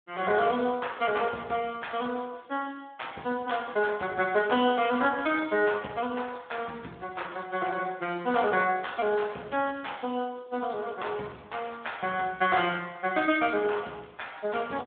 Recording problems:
phone line; 130 Hz to 3.6 kHz, Speex

